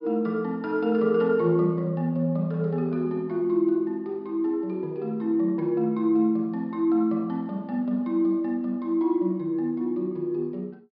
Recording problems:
treble missing; nothing above 5.5 kHz

